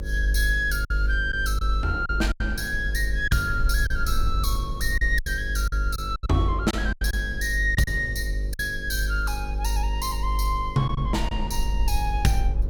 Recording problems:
hum; 50 Hz, harmonics up to 550 Hz, SNR 11 dB
rumble; below 52 Hz, strongest tone 50 Hz, SNR 2 dB
packet loss; 6% of the sound replaced, filled with silence

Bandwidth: 17 kHz